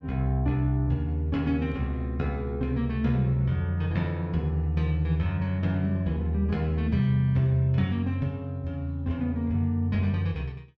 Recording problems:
none

